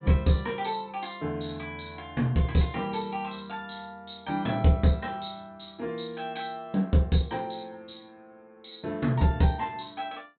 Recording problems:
low-pass filter; nothing above 4 kHz

